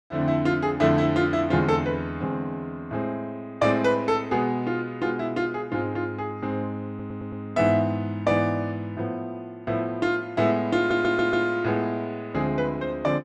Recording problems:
stutter; at 7 s and at 11 s

